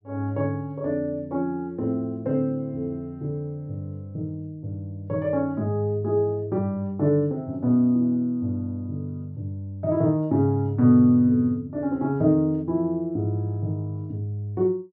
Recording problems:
low-pass filter; nothing above 6.5 kHz

